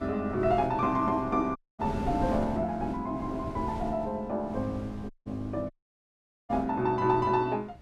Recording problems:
wind on the microphone; below 280 Hz, SNR 13 dB
dropout; at 1.5 s, at 5 s and at 5.5 s for 1 s

